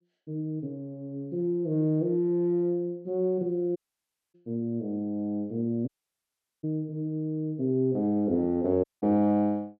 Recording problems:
audio cutting out; at 4 s for 0.5 s, at 6 s for 1 s and at 9 s

